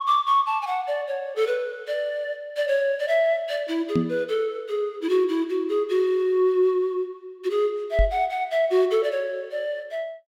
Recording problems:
knock on the microphone; at 4 s and at 8 s; peak +4 dB vs average level

